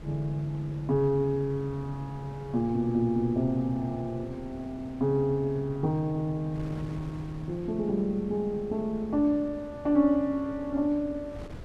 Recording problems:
wind on the microphone; below 330 Hz, SNR 16 dB

